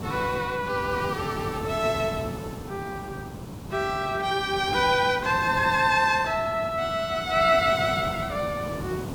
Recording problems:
background hiss; SNR 11 dB

